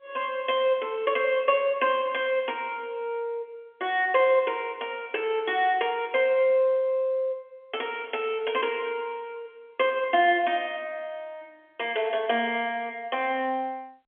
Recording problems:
phone line; 240 Hz to 3.4 kHz, G.711

